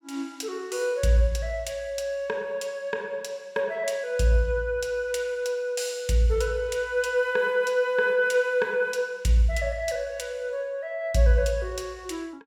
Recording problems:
none

